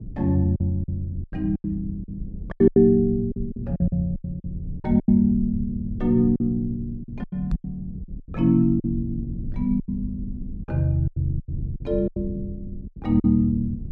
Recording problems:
low-frequency rumble; below 130 Hz, SNR 13 dB
packet loss; 13% of the sound replaced, filled with silence
microphone thump; at 7.5 s; peak -1 dB vs average level

